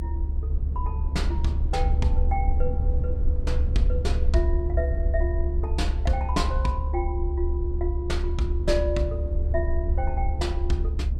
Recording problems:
rumble; below 70 Hz, SNR -4 dB
wind on the microphone; below 150 Hz, SNR 14 dB

